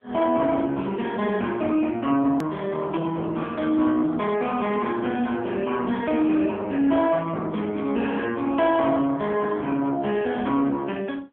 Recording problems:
telephone audio; 220 Hz to 3.3 kHz, AMR-NB
distortion; soft clipping, signal-to-distortion ratio 14 dB
hard cut with a click; at 2.5 s

